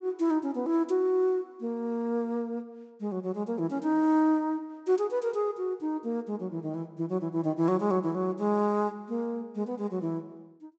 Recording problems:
treble cut off; nothing above 8 kHz

